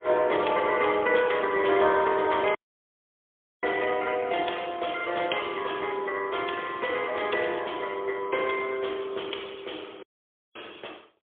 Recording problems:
phone line; 280 Hz to 3.4 kHz, AMR-NB, then MP3
audio cutting out; at 2.5 s for 1 s and at 10 s for 0.5 s

